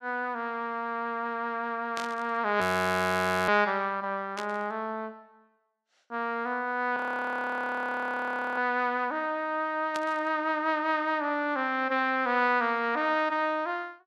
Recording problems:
burst of static; at 2 s, at 4.5 s and at 10 s; peak -5 dB vs average level
audio freezing; at 2.5 s for 1 s and at 7 s for 1.5 s

